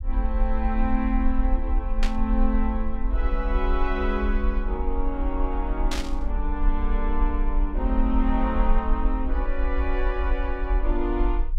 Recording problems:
rumble; below 46 Hz, strongest tone 22 Hz, SNR -1 dB
burst of static; at 2 s and at 6 s; peak +2 dB vs average level

